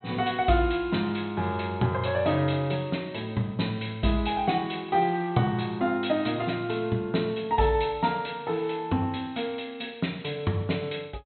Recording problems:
low-pass filter; nothing above 4.1 kHz

